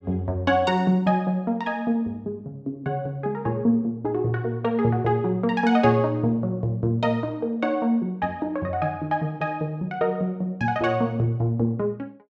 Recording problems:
none

